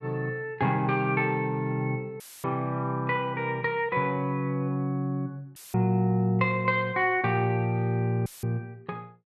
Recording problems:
audio cutting out; at 2 s, at 5.5 s and at 8.5 s; filled with static

